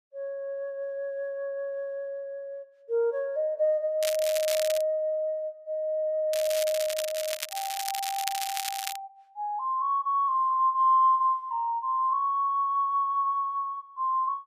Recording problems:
crackling; at 4 s and from 6.5 to 9 s; loose cable, SNR 7 dB

